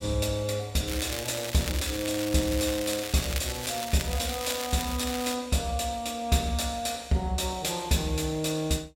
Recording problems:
crackle; from 1 to 3 s and from 3 to 5.5 s; loose cable, SNR 7 dB

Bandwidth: 16 kHz